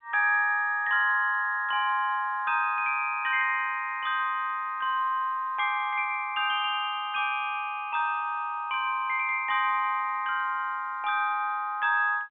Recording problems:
telephone audio; 190 Hz to 3.4 kHz, G.711

